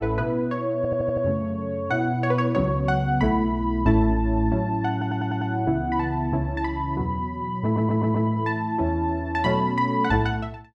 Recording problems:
stutter; at 1 s, at 5 s and at 7.5 s

